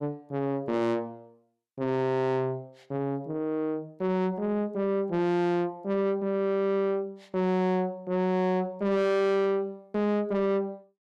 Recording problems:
distorted audio; soft clipping, signal-to-distortion ratio 7 dB

